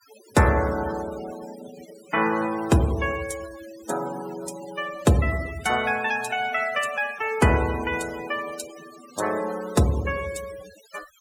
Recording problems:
denoising artefacts; signal-to-artefact ratio 15 dB

